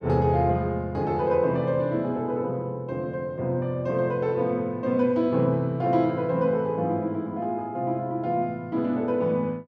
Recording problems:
none

